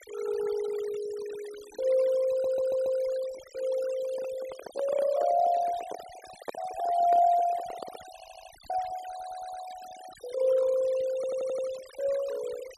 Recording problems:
noise reduction artefacts; signal-to-artefact ratio 19 dB
audio stuttering; 4 times, first at 2.5 s
microphone handling noise; from 4 to 8 s; peak -2 dB vs average level

